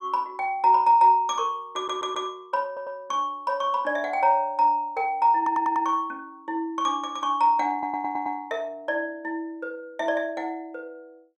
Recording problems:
audio stuttering; 4 times, first at 1.5 s

